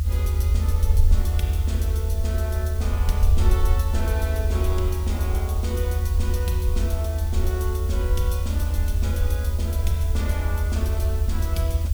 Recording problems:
hiss; slope +3 dB per octave, SNR 11 dB
rumble; below 80 Hz, SNR -8 dB

